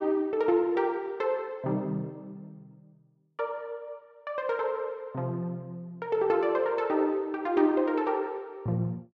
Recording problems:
none

